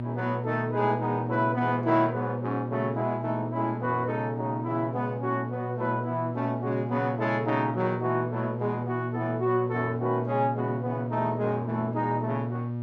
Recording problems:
hum; 60 Hz, harmonics up to 600 Hz, SNR 4 dB

